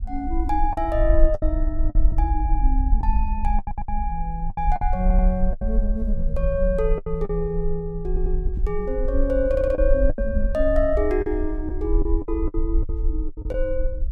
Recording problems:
low-frequency rumble; below 48 Hz, SNR 0 dB
lost packets; 8% of the sound replaced, filled with the last packet
audio stuttering; 4 times, first at 3.5 s

